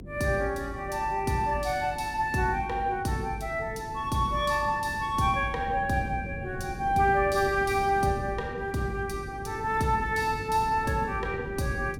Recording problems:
hum; 50 Hz, harmonics up to 350 Hz, SNR 18 dB
wind on the microphone; below 260 Hz, SNR 14 dB

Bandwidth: 17 kHz